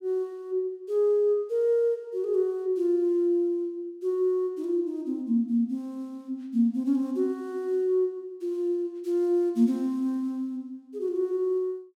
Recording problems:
none

